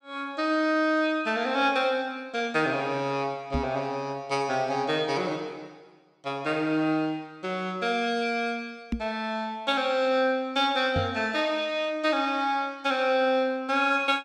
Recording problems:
microphone bump; at 3.5 s, at 9 s and at 11 s; peak +1 dB vs average level

